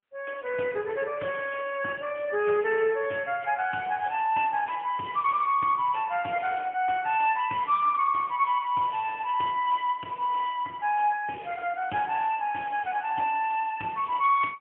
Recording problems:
telephone audio; 220 Hz to 3.1 kHz, AMR-NB, then MP3

